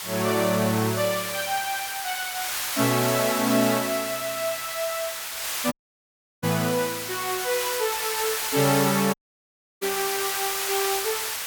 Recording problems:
background hiss; SNR 2 dB
dropout; at 5.5 s for 0.5 s and at 9 s for 0.5 s

